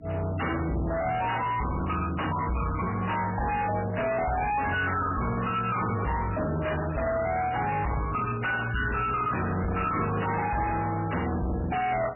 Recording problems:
lossy codec; MP3, log-spectral distance 7 dB, nothing above 2.9 kHz
distorted audio; soft clipping, signal-to-distortion ratio 5 dB
electrical hum; 60 Hz, harmonics up to 300 Hz, SNR 21 dB

